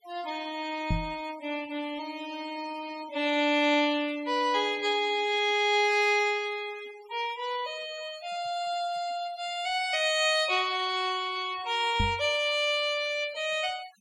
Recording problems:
noise reduction artefacts; signal-to-artefact ratio 20 dB
microphone bump; at 1 s and at 12 s; peak +3 dB vs average level

